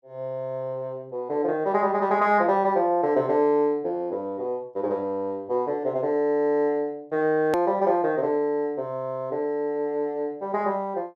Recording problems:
edit click; at 7.5 s

